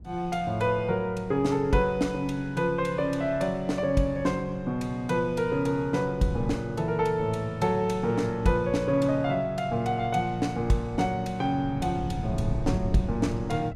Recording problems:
wind noise; below 150 Hz, SNR 13 dB

